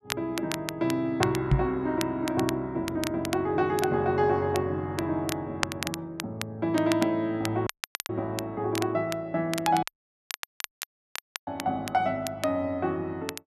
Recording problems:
crackling; vinyl, SNR 10 dB
microphone thump; at 1.5 s; peak +9 dB vs average level
audio cutting out; at 7.5 s and at 10 s for 1.5 s

